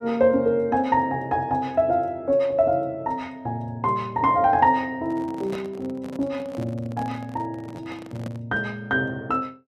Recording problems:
handling noise; from 5 to 8.5 s; peak -8 dB vs average level

